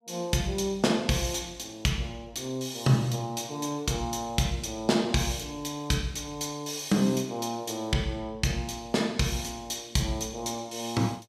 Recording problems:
none

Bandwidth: 15.5 kHz